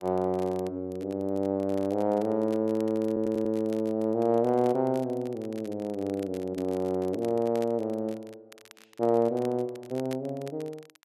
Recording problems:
crackling; vinyl, SNR 24 dB
audio stuttering; at 3 s

